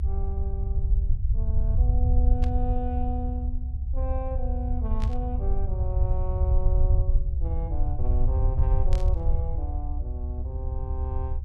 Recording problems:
low-frequency rumble; below 70 Hz, SNR -10 dB
burst of static; at 2.5 s, at 5 s and at 9 s; peak -2 dB vs average level

